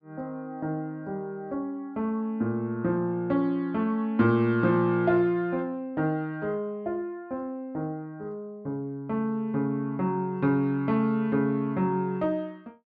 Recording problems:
none

